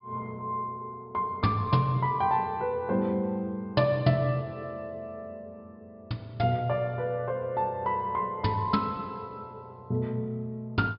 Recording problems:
treble cut off; nothing above 5.5 kHz

